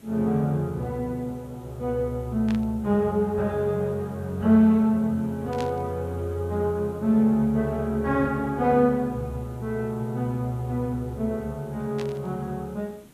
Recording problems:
hiss; SNR 27 dB
burst of static; at 2.5 s, at 5.5 s and at 12 s; peak -9 dB vs average level

